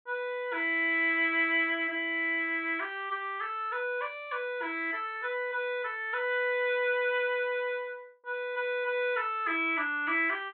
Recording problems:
low-pass filter; nothing above 4 kHz

